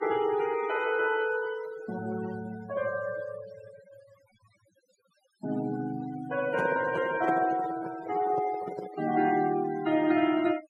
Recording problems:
noise reduction artefacts; signal-to-artefact ratio 15 dB
handling noise; from 6.5 to 9 s; peak +1 dB vs average level

